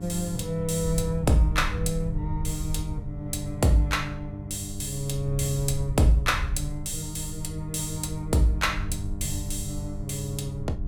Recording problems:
hum; 50 Hz, harmonics up to 800 Hz, SNR 12 dB
low-frequency rumble; below 78 Hz, SNR 9 dB

